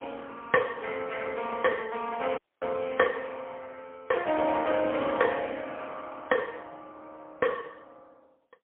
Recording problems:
telephone audio; 280 Hz to 3.4 kHz, AMR-NB, then MP3
dropout; at 2.5 s

